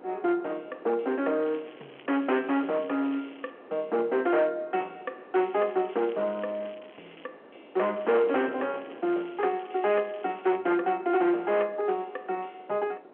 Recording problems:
phone line; 300 Hz to 3.4 kHz, G.711
distortion; hard clipping, signal-to-distortion ratio 12 dB
wind noise; below 770 Hz, SNR 21 dB
crackle; from 1.5 to 3.5 s, from 5.5 to 7.5 s and from 8 to 11 s; loose cable, SNR 25 dB

